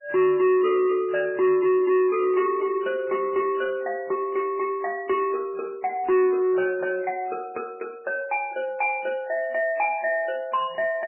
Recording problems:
codec artefacts; MP3, log-spectral distance 2 dB, nothing above 2.4 kHz
distortion; soft clipping, signal-to-distortion ratio 7 dB

